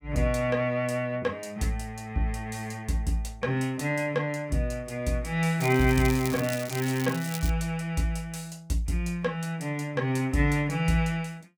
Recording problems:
crackling; from 5.5 to 7.5 s; loose cable, SNR 11 dB

